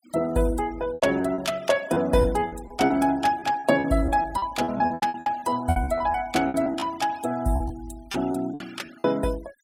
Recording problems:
denoising artefacts; signal-to-artefact ratio 21 dB
packet loss; 14% of the sound replaced, filled with repeated pitch periods

